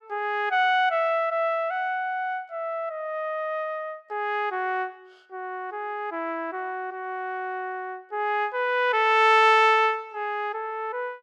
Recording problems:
none

